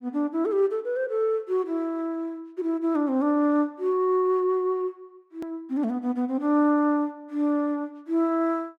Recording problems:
edit click; at 5.5 s

